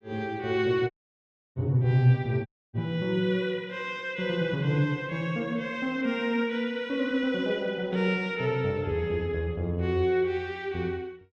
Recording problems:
dropout; at 1 s for 0.5 s and at 2.5 s

